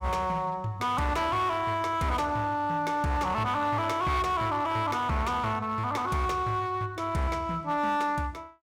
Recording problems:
distorted audio; hard clipping, uneven, signal-to-distortion ratio 11 dB

